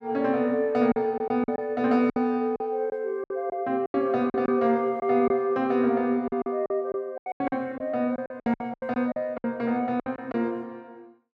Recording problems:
lost packets; 12% of the sound replaced, filled with silence

